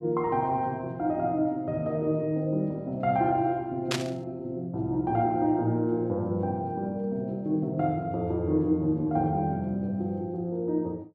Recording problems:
burst of static; at 4 s; peak +3 dB vs average level

